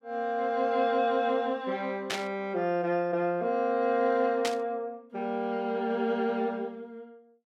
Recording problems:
burst of static; at 2 s and at 4.5 s; peak +1 dB vs average level

